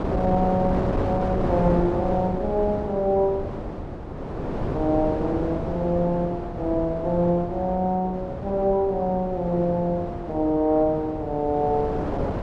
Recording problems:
wind on the microphone; below 570 Hz, SNR 6 dB

